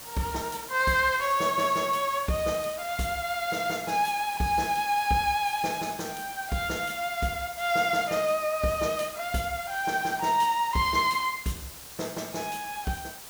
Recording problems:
background hiss; slope -1 dB per octave, SNR 13 dB

